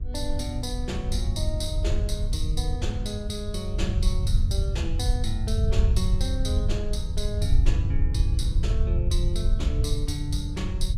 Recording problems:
hum; 50 Hz, harmonics up to 1.2 kHz, SNR 19 dB
low-frequency rumble; below 84 Hz, SNR -6 dB

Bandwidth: 15.5 kHz